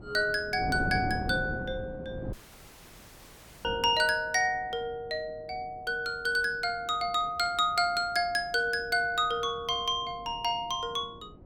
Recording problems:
wind on the microphone; below 330 Hz, SNR 13 dB
dropout; at 2.5 s for 1.5 s

